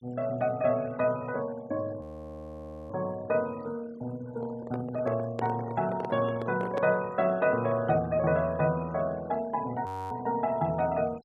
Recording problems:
denoising artefacts; signal-to-artefact ratio 21 dB
frozen audio; at 2 s for 1 s and at 10 s
handling noise; from 4.5 to 7 s; peak 0 dB vs average level

